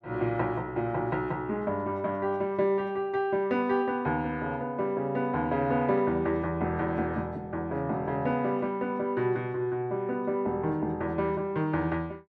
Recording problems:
none

